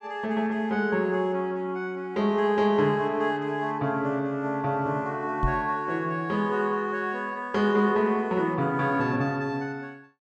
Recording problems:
microphone thump; at 5.5 s; peak +2 dB vs average level

